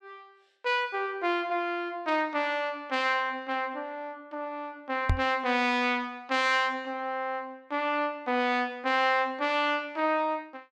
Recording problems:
microphone thump; at 5 s; peak +5 dB vs average level

